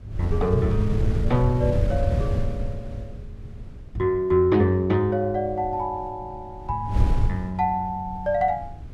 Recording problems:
wind on the microphone; below 110 Hz, SNR 3 dB

